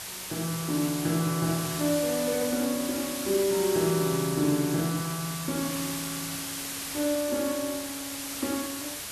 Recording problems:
background hiss; slope 0 dB per octave, SNR 5 dB

